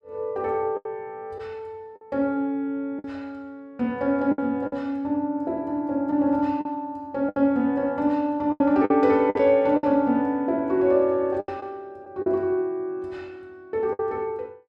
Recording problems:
lost packets; 6% of the sound replaced, filled with the last packet

